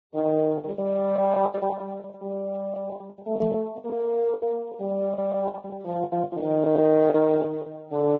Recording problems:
lossy compression; Speex, then Vorbis, log-spectral distance 2 dB, nothing above 6.7 kHz
packet loss; 17% of the sound replaced, filled with the last packet
microphone bump; at 3.5 s; peak -5 dB vs average level

